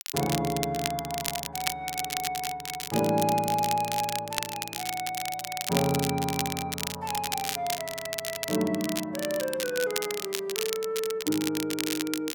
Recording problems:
crackle; vinyl, SNR 3 dB

